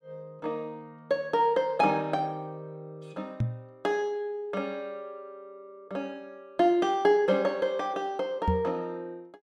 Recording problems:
knock on the microphone; at 3.5 s and at 8.5 s; peak +4 dB vs average level

